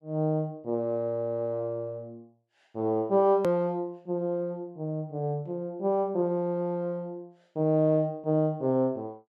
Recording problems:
edit click; at 3.5 s

